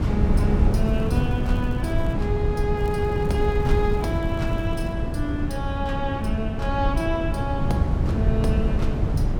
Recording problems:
wind noise; below 160 Hz, SNR -3 dB
crackling; from 1 to 2 s and from 3 to 5 s; loose cable, SNR 25 dB

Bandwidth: 18 kHz